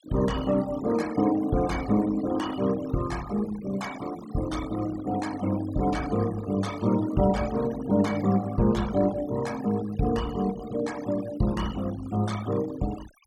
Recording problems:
noise reduction artefacts; signal-to-artefact ratio 15 dB

